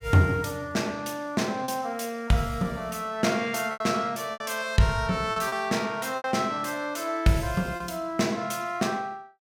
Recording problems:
lost packets; 4% of the sound replaced, filled with repeated pitch periods

